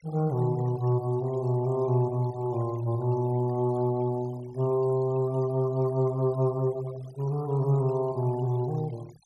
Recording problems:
noise reduction artefacts; signal-to-artefact ratio 24 dB

